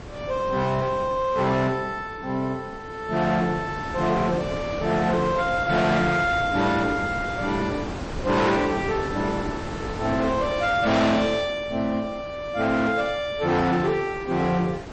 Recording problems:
codec artefacts; MP3, log-spectral distance 2 dB, nothing above 7.6 kHz
distorted audio; hard clipping, uneven, signal-to-distortion ratio 8 dB
wind noise; below 900 Hz, SNR 11 dB

